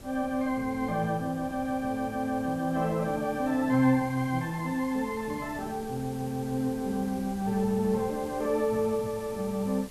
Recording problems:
hiss; slope 0 dB per octave, SNR 21 dB
wind on the microphone; below 410 Hz, SNR 19 dB

